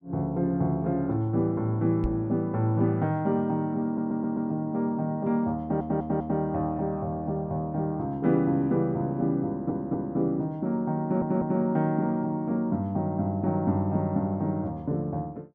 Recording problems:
microphone thump; at 2 s; peak +1 dB vs average level
stutter; 4 times, first at 4 s

